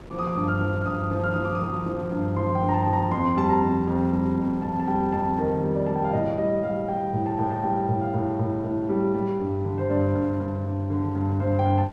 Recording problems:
wind noise; below 500 Hz, SNR 21 dB

